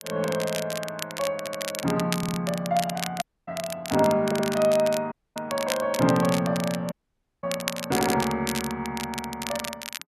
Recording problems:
crackling; vinyl, SNR 8 dB
audio stuttering; 4 times, first at 1.5 s
dropout; at 3 s, at 5 s and at 7 s for 0.5 s

